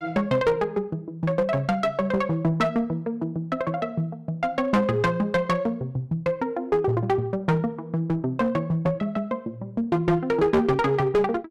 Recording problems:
distorted audio; hard clipping, uneven, signal-to-distortion ratio 11 dB

